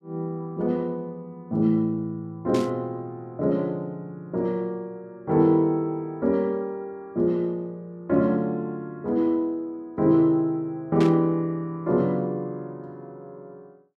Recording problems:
static burst; at 2.5 s and at 11 s; peak -6 dB vs average level

